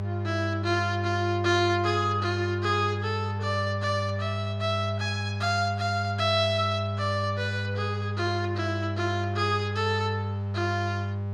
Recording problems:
electrical hum; 50 Hz, harmonics up to 800 Hz, SNR 3 dB

